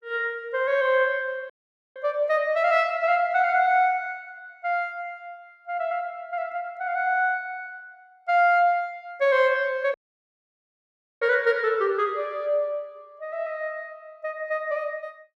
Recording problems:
dropout; at 1.5 s and at 10 s for 1.5 s

